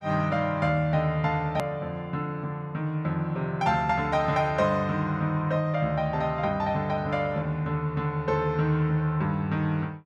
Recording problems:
edit click; at 1.5 s

